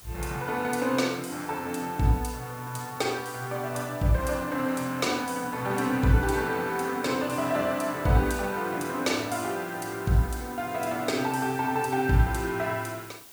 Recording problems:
background hiss; slope -1 dB per octave, SNR 18 dB

